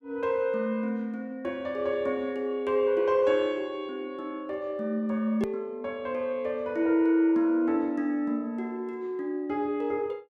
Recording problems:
edit click; at 5.5 s

